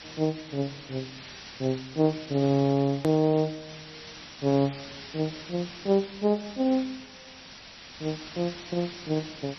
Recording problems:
codec artefacts; MP3, log-spectral distance 21 dB, nothing above 13.1 kHz
background hiss; slope 0 dB per octave, SNR 14 dB
click at an edit; at 3 s

